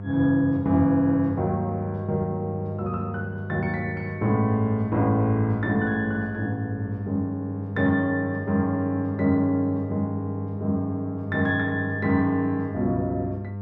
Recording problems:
hum; 50 Hz, harmonics up to 900 Hz, SNR 8 dB

